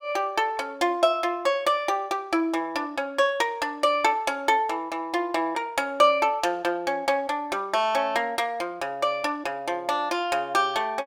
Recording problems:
none

